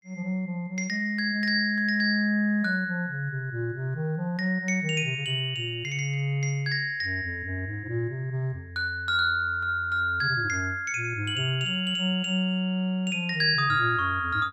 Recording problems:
none

